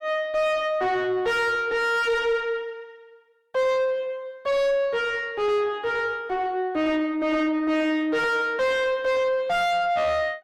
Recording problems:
distorted audio; soft clipping, signal-to-distortion ratio 6 dB

